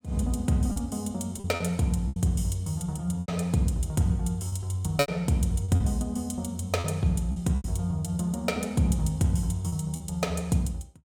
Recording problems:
lost packets; 7% of the sound replaced, filled with repeated pitch periods

